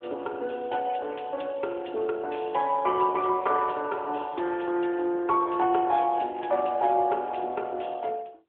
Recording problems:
phone line; 300 Hz to 3.5 kHz, AMR-NB

